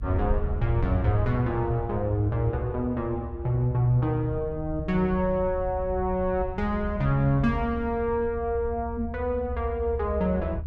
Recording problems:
low-frequency rumble; below 76 Hz, SNR 8 dB

